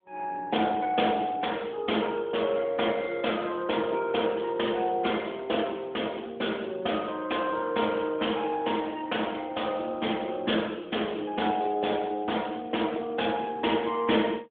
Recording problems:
phone line; 240 Hz to 3.6 kHz, AMR-NB

